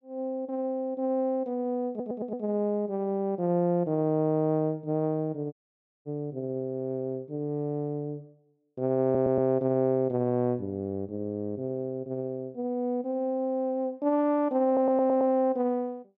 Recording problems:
audio stuttering; at 2 s, at 9 s and at 15 s
dropout; at 5.5 s for 0.5 s

